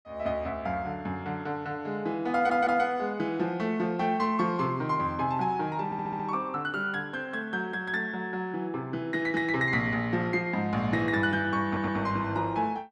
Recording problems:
audio stuttering; at 2.5 s, at 6 s and at 12 s

